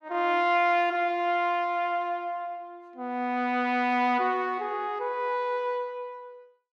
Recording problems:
none

